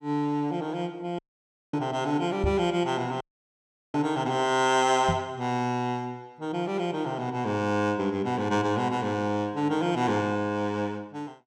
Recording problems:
audio cutting out; at 1 s for 0.5 s and at 3 s for 0.5 s
knock on the microphone; at 2.5 s and at 5 s; peak +2 dB vs average level

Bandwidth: 16.5 kHz